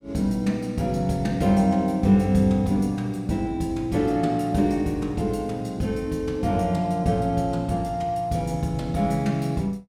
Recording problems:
none

